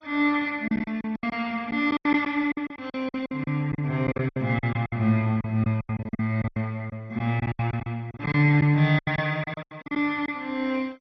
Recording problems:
codec artefacts; MP2, log-spectral distance 2 dB, nothing above 5.2 kHz
packet loss; 17% of the sound replaced, filled with silence

